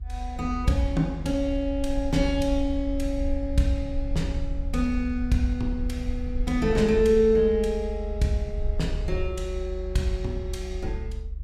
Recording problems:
low-frequency rumble; below 66 Hz, SNR 6 dB

